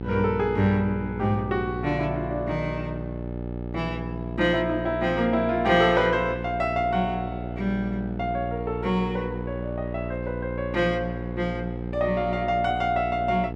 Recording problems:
hum; 60 Hz, harmonics up to 900 Hz, SNR 7 dB

